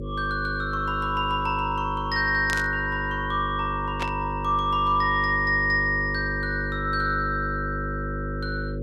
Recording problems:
electrical hum; 50 Hz, harmonics up to 550 Hz, SNR 7 dB
static burst; at 2.5 s and at 4 s; peak -3 dB vs average level

